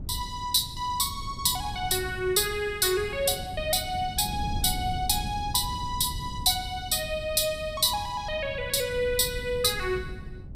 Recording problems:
wind on the microphone; below 150 Hz, SNR 12 dB

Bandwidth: 15.5 kHz